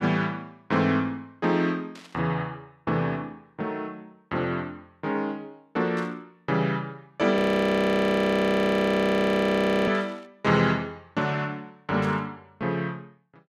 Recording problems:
static burst; 4 times, first at 2 s; peak -14 dB vs average level
frozen audio; at 7.5 s for 2.5 s

